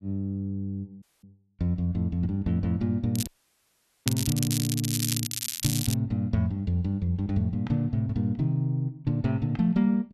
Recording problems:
dropout; at 1 s and at 3.5 s for 1 s
crackling; from 3 to 6 s; loose cable, SNR 3 dB

